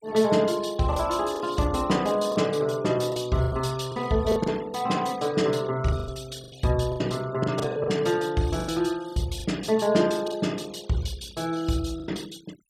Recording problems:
noise reduction artefacts; signal-to-artefact ratio 21 dB
lost packets; 9% of the sound replaced, filled with the last packet

